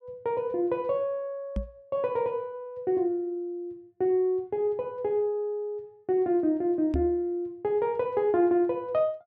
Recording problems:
knock on the microphone; at 1.5 s and at 7 s; peak +2 dB vs average level

